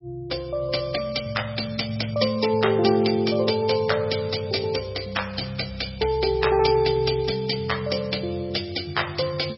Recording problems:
lossy codec; MP3, log-spectral distance 10 dB, nothing above 5.3 kHz

